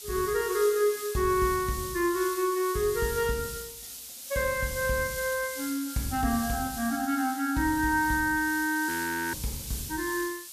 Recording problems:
hiss; SNR 9 dB
audio freezing; at 9 s

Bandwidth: 14.5 kHz